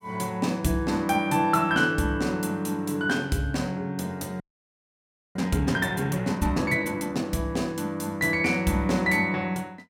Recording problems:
frozen audio; at 4.5 s for 1 s

